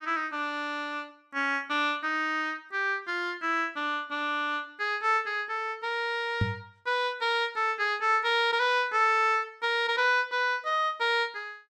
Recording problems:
knock on the microphone; at 6.5 s; peak +3 dB vs average level

